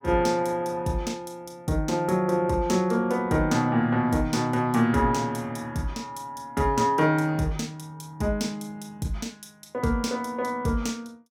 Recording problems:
none

